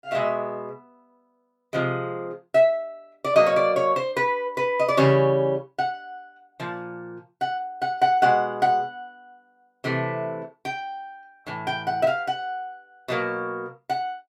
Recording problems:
none

